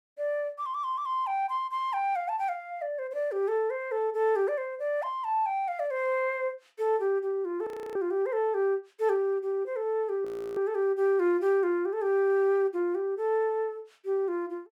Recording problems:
audio freezing; at 7.5 s and at 10 s

